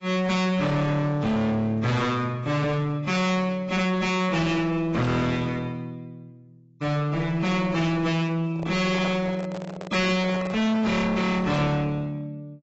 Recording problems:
lossy codec; AAC, log-spectral distance 2 dB, nothing above 7.6 kHz
distortion; hard clipping, uneven, signal-to-distortion ratio 5 dB
microphone handling noise; from 8.5 to 11 s; peak -4 dB vs average level

